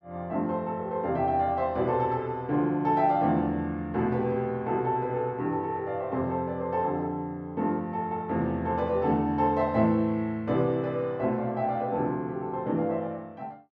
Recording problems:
none

